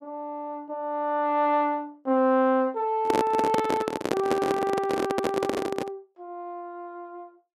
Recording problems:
handling noise; from 3 to 6 s; peak +4 dB vs average level

